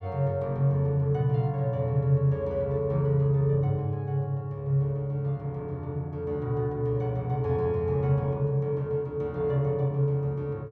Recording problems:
none

